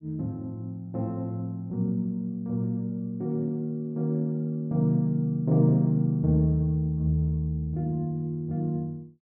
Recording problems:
none

